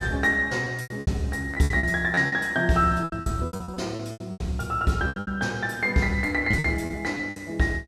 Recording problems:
lost packets; 16% of the sound replaced, filled with repeated pitch periods

